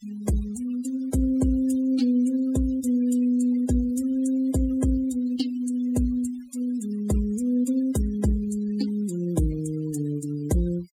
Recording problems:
denoising artefacts; signal-to-artefact ratio 17 dB

